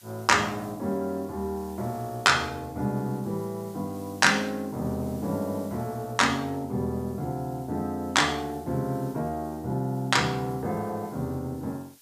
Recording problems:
background hiss; slope +2 dB per octave, SNR 24 dB

